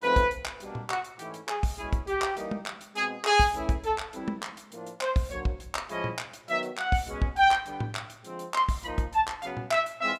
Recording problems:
none

